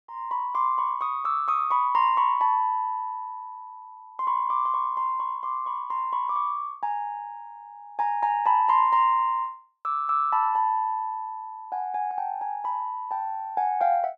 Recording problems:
none

